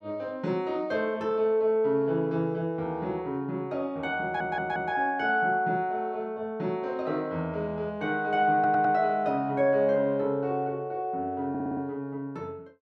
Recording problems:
audio stuttering; at 4 s, at 8.5 s and at 11 s

